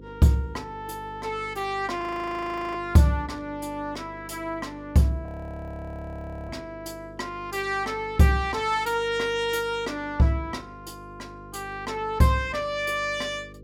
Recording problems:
hum; 50 Hz, harmonics up to 500 Hz, SNR 18 dB
frozen audio; at 2 s for 0.5 s and at 5.5 s for 1 s

